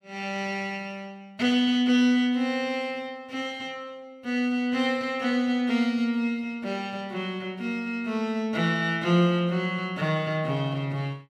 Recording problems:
none

